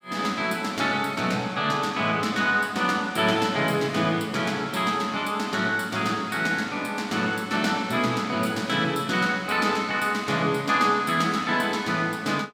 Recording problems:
none

